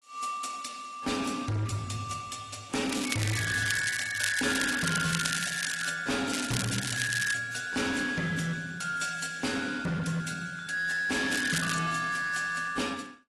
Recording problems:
lossy compression; AAC, log-spectral distance 7 dB, nothing above 11.3 kHz
distorted audio; hard clipping, signal-to-distortion ratio 7 dB
crackling; from 3 to 6 s, from 6.5 to 7.5 s and at 11 s; loose cable, SNR 4 dB

